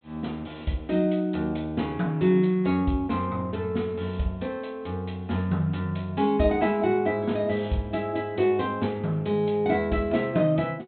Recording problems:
treble cut off; nothing above 4 kHz

